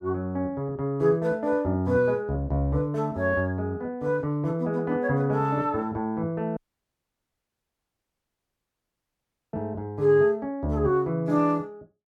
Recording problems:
audio cutting out; at 6.5 s for 3 s

